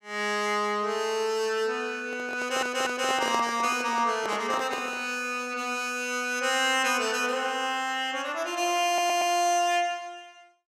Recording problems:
handling noise; from 2 to 5 s; peak -3 dB vs average level
audio stuttering; at 2.5 s and at 9 s

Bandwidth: 15 kHz